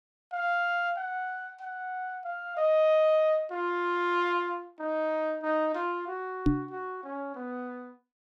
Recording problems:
knock on the microphone; at 6.5 s; peak +8 dB vs average level

